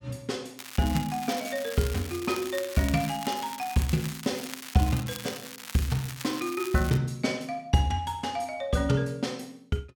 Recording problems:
crackling; from 0.5 to 7 s; loose cable, SNR 11 dB

